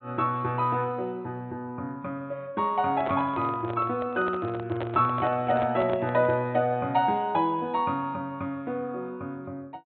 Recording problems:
treble missing; nothing above 4 kHz
microphone handling noise; from 3 to 6.5 s; peak -2 dB vs average level

